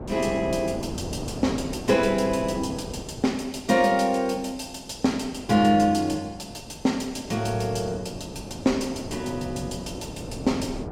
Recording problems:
wind noise; below 480 Hz, SNR 12 dB

